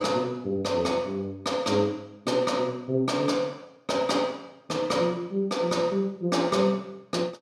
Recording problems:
none

